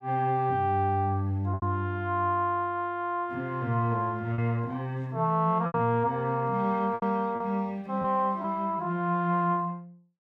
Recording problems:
packet loss; 4% of the sound replaced, filled with repeated pitch periods

